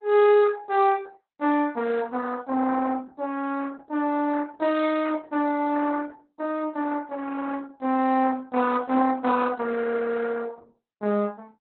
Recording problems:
codec artefacts; Opus, log-spectral distance 3 dB, nothing above 4 kHz

